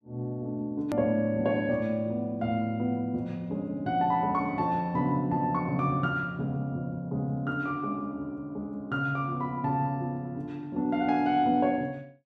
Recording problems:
edit click; at 1 s

